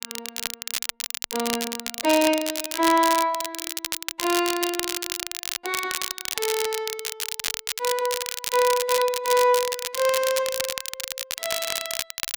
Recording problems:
crackling; vinyl, SNR 4 dB

